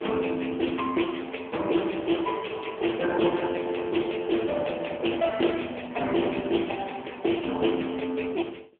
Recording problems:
phone line; 240 Hz to 3.1 kHz, AMR-NB

